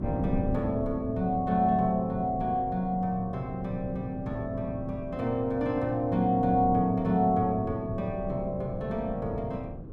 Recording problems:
wind noise; below 240 Hz, SNR 11 dB

